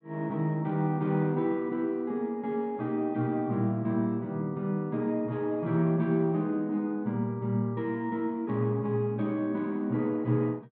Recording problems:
none

